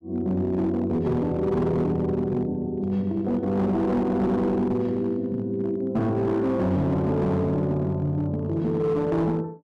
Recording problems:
distorted audio; hard clipping, signal-to-distortion ratio 12 dB

